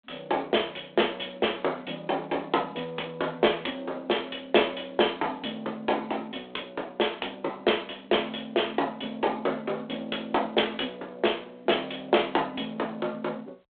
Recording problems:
phone line; 300 Hz to 3.6 kHz, G.726

